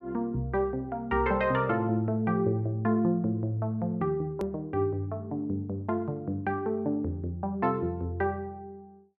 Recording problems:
hard cut with a click; at 4.5 s

